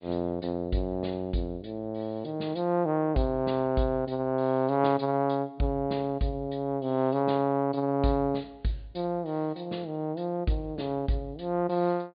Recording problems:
treble cut off; nothing above 4.7 kHz

